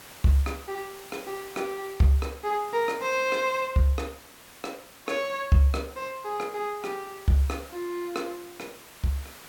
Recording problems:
hiss; slope -2 dB per octave, SNR 19 dB

